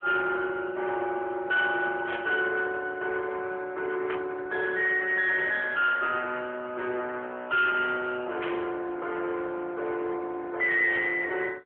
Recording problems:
telephone audio; 300 Hz to 3.4 kHz, AMR-NB
distorted audio; hard clipping, uneven, signal-to-distortion ratio 11 dB
static burst; 4 times, first at 2 s; peak -5 dB vs average level

